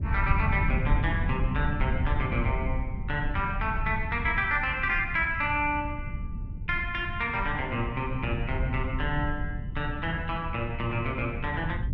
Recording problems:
low-frequency rumble; below 120 Hz, SNR 4 dB

